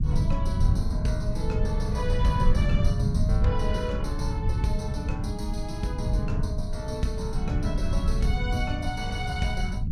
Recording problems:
low-frequency rumble; below 110 Hz, SNR -4 dB

